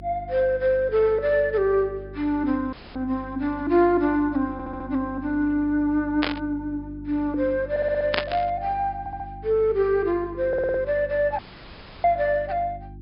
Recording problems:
treble missing; nothing above 5.5 kHz
electrical hum; 50 Hz, harmonics up to 350 Hz, SNR 18 dB
dropout; at 2.5 s and at 11 s for 0.5 s
audio stuttering; 4 times, first at 4.5 s
static burst; at 6 s and at 8 s; peak +4 dB vs average level

